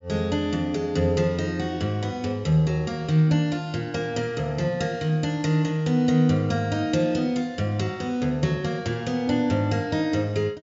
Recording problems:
treble missing; nothing above 7.3 kHz

